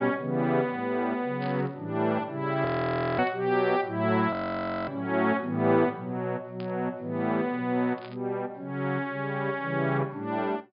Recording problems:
treble cut off; nothing above 5.1 kHz
burst of static; 4 times, first at 1.5 s; peak -12 dB vs average level
frozen audio; at 2.5 s for 0.5 s and at 4.5 s for 0.5 s

